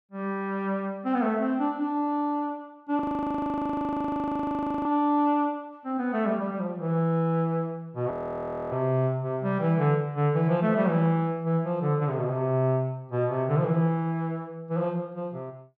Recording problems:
audio freezing; at 3 s for 2 s and at 8 s for 0.5 s

